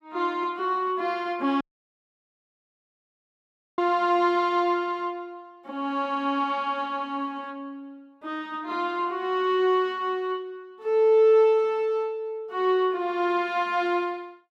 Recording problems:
audio cutting out; at 1.5 s for 2 s

